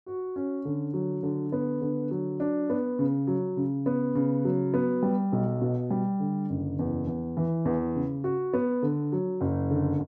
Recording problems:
none

